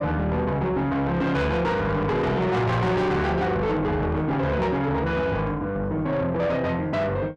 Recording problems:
distorted audio; soft clipping, signal-to-distortion ratio 7 dB

